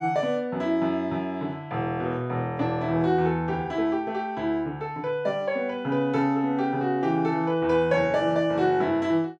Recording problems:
none

